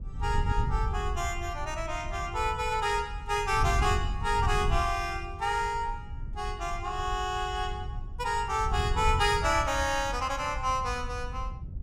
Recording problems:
wind on the microphone; below 92 Hz, SNR 6 dB

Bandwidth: 16.5 kHz